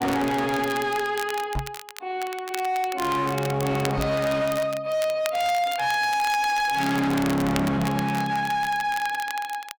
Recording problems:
distorted audio; hard clipping, signal-to-distortion ratio 7 dB
crackle; vinyl, SNR 13 dB
microphone bump; at 1.5 s and at 4 s; peak -1 dB vs average level

